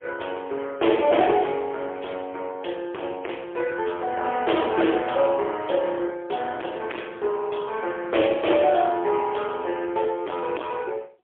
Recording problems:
phone line; 280 Hz to 3.4 kHz, AMR-NB, then MP3
distortion; hard clipping, signal-to-distortion ratio 9 dB

